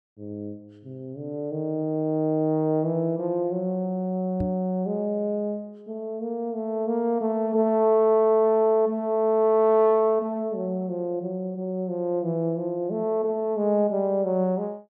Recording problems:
microphone thump; at 4.5 s; peak -2 dB vs average level

